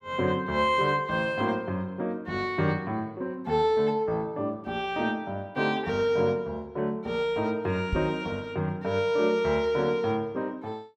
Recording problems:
microphone thump; at 8 s; peak +1 dB vs average level

